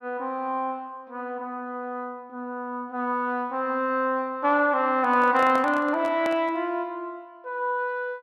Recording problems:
handling noise; from 5 to 6.5 s; peak -4 dB vs average level

